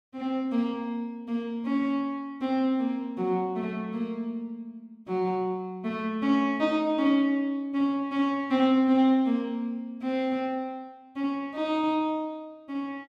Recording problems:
none

